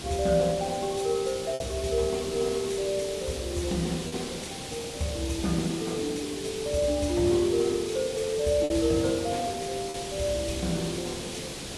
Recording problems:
codec artefacts; AAC, log-spectral distance 7 dB, nothing above 10.4 kHz
hiss; SNR 8 dB
packet loss; 1.9% of the sound replaced, filled with repeated pitch periods

